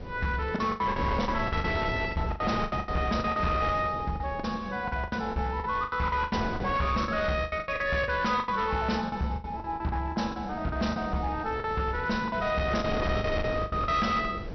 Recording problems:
low-pass filter; nothing above 5.9 kHz
distorted audio; hard clipping, signal-to-distortion ratio 11 dB
wind noise; below 500 Hz, SNR 9 dB
lost packets; 16% of the sound replaced, filled with the last packet

